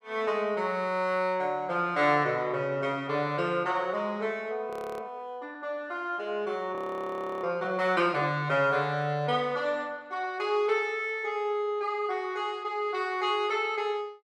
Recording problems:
frozen audio; at 4.5 s and at 7 s for 0.5 s

